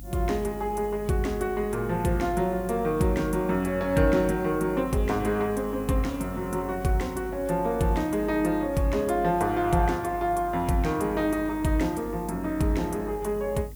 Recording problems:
hum; 50 Hz, harmonics up to 300 Hz, SNR 16 dB
hiss; SNR 23 dB

